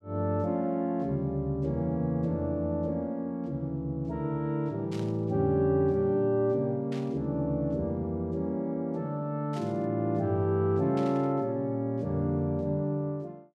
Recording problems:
burst of static; 4 times, first at 5 s; peak -13 dB vs average level

